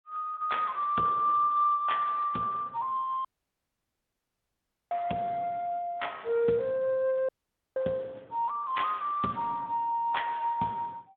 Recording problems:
phone line; 190 Hz to 3.5 kHz, Speex
audio cutting out; at 3.5 s for 1.5 s and at 7.5 s

